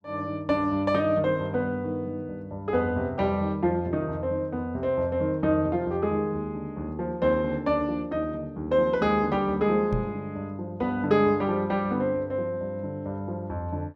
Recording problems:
microphone thump; at 10 s; peak +1 dB vs average level

